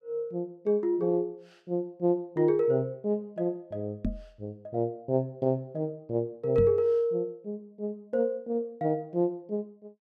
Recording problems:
knock on the microphone; at 4 s and at 6.5 s; peak +2 dB vs average level

